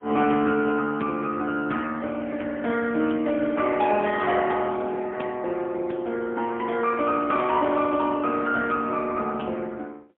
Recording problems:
telephone audio; 170 Hz to 3.3 kHz, AMR-NB, then MP3

